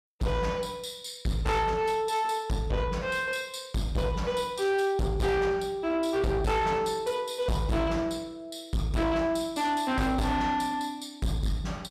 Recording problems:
distorted audio; soft clipping, signal-to-distortion ratio 7 dB

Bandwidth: 14.5 kHz